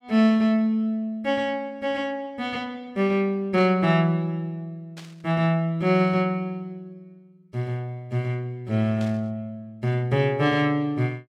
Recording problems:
burst of static; at 3.5 s, at 5 s and at 9 s; peak -14 dB vs average level

